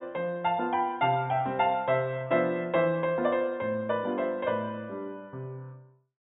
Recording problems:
treble cut off; nothing above 4 kHz

